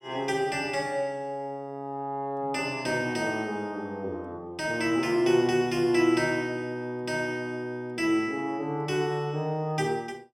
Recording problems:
none

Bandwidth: 16 kHz